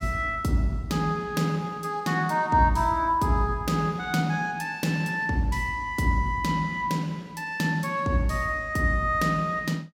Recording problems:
none

